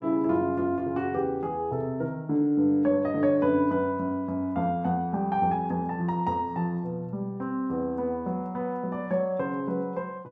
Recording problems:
none

